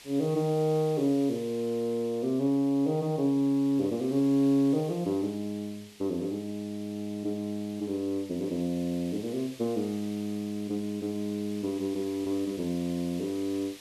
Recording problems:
hiss; SNR 20 dB

